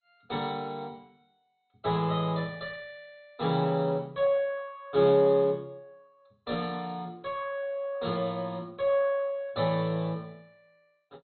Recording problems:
codec artefacts; MP2, log-spectral distance 4 dB, nothing above 4.1 kHz

